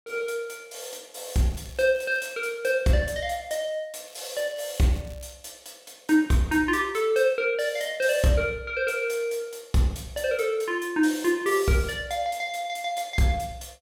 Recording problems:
crackling; from 1.5 to 2.5 s and from 4 to 5.5 s; loose cable, SNR 25 dB

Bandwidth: 16.5 kHz